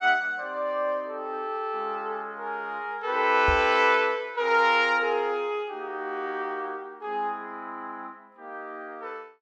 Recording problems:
knock on the microphone; at 3.5 s; peak -1 dB vs average level

